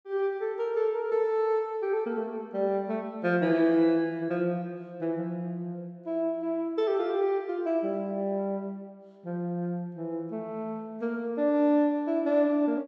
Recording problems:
none

